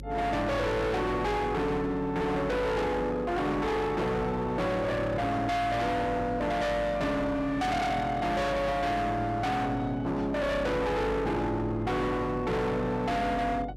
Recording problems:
distortion; hard clipping, signal-to-distortion ratio 6 dB
hum; 50 Hz, harmonics up to 550 Hz, SNR 15 dB

